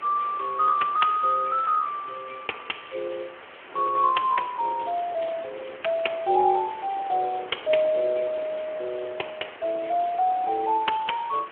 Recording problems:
telephone audio; 280 Hz to 3.2 kHz, Speex
hiss; SNR 19 dB
wind on the microphone; below 850 Hz, SNR 20 dB

